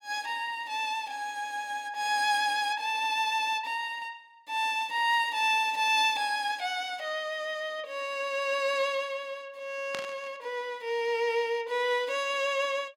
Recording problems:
burst of static; at 10 s; peak -3 dB vs average level

